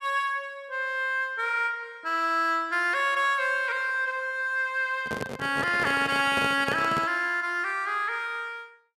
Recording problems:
handling noise; from 5 to 7 s; peak -2 dB vs average level

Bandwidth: 14 kHz